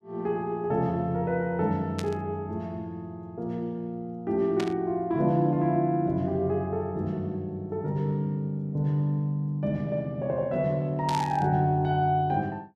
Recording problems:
static burst; at 2 s, at 4.5 s and at 11 s; peak -4 dB vs average level

